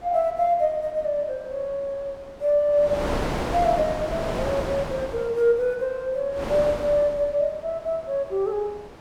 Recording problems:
wind noise; below 990 Hz, SNR 7 dB

